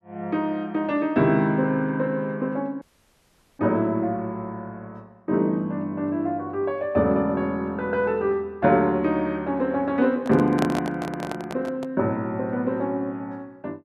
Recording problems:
audio cutting out; at 3 s for 1 s
microphone handling noise; from 10 to 12 s; peak +1 dB vs average level

